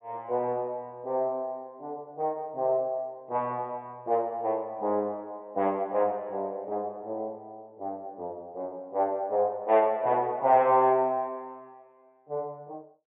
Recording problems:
treble cut off; nothing above 4 kHz

